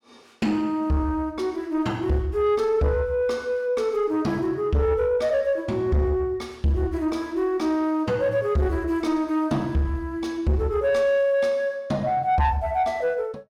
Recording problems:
distortion; soft clipping, signal-to-distortion ratio 11 dB

